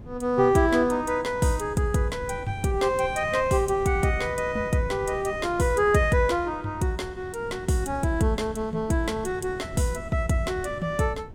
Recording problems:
wind noise; below 230 Hz, SNR 16 dB

